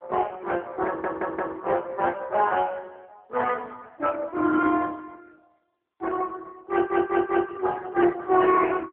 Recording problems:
phone line; 220 Hz to 3.7 kHz, AMR-NB
audio stuttering; at 1 s and at 6.5 s

